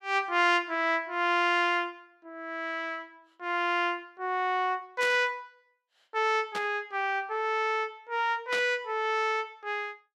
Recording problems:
burst of static; at 5 s, at 6.5 s and at 8.5 s; peak -3 dB vs average level

